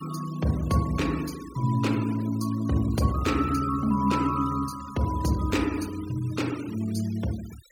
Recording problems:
noise reduction artefacts; signal-to-artefact ratio 18 dB

